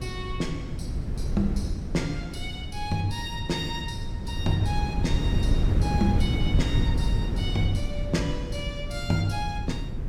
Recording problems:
wind noise; below 140 Hz, SNR -1 dB

